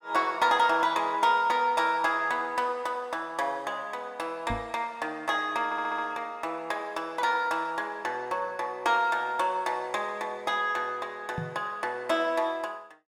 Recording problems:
microphone thump; at 4.5 s and at 11 s; peak -2 dB vs average level
audio stuttering; at 5.5 s

